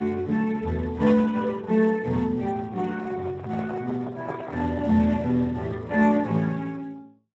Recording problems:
codec artefacts; MP3, then Speex, log-spectral distance 3 dB, nothing above 16.6 kHz
microphone handling noise; from 3 to 5 s; peak -4 dB vs average level

